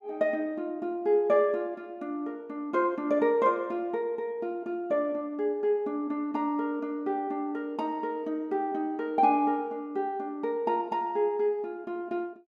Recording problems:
none

